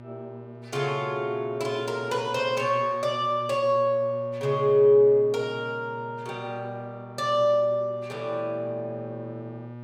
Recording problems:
electrical hum; 60 Hz, harmonics up to 1.6 kHz, SNR 16 dB

